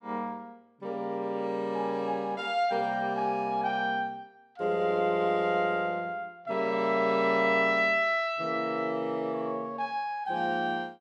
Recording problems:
none

